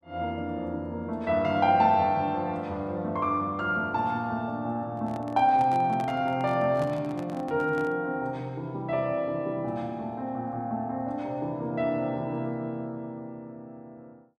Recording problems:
microphone handling noise; from 5 to 8 s; peak -7 dB vs average level

